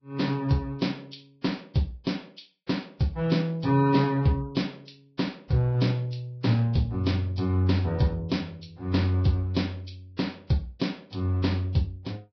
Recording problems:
lossy codec; Vorbis, log-spectral distance 3 dB, nothing above 5.5 kHz

